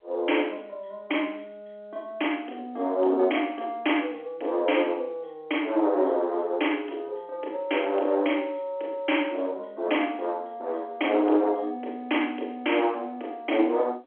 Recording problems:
phone line; 260 Hz to 3.3 kHz, G.711
distortion; soft clipping, signal-to-distortion ratio 15 dB

